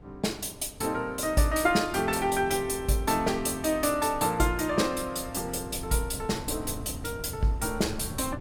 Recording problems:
wind noise; below 150 Hz, SNR 15 dB

